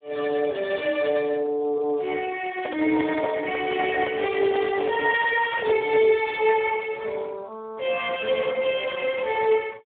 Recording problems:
phone line; 260 Hz to 3.4 kHz, Speex
microphone handling noise; from 2.5 to 6 s; peak -1 dB vs average level

